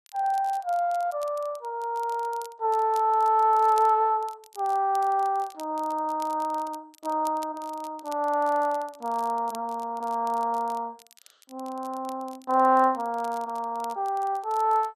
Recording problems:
codec artefacts; MP2, log-spectral distance 2 dB
crackling; vinyl, SNR 25 dB

